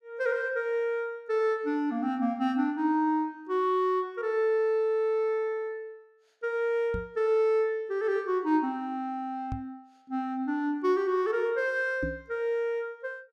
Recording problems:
microphone bump; at 7 s, at 9.5 s and at 12 s; peak -2 dB vs average level

